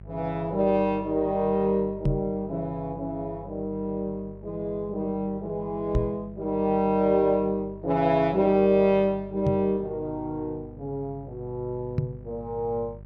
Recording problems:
electrical hum; 50 Hz, harmonics up to 600 Hz, SNR 18 dB
knock on the microphone; 4 times, first at 2 s; peak +5 dB vs average level

